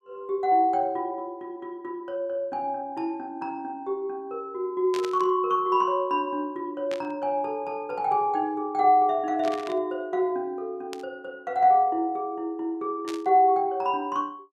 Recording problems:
static burst; 5 times, first at 5 s; peak -7 dB vs average level

